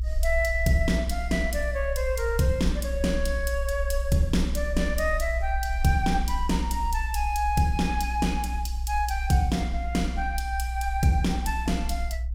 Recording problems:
rumble; below 60 Hz, strongest tone 60 Hz, SNR 4 dB

